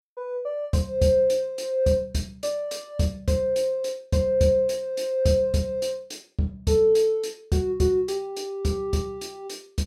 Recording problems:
none

